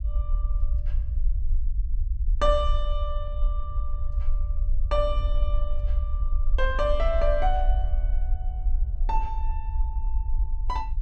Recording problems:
rumble; below 50 Hz, SNR -1 dB

